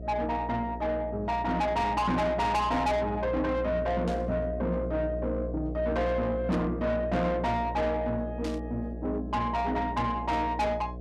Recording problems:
distorted audio; soft clipping, signal-to-distortion ratio 8 dB
hum; 60 Hz, harmonics up to 720 Hz, SNR 9 dB
static burst; at 4 s, at 6.5 s and at 8.5 s; peak -10 dB vs average level

